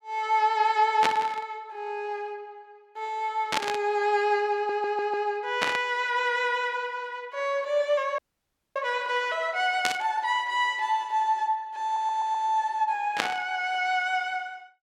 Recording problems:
burst of static; 5 times, first at 1 s; peak +5 dB vs average level
audio stuttering; at 4.5 s and at 12 s
frozen audio; at 8 s for 0.5 s

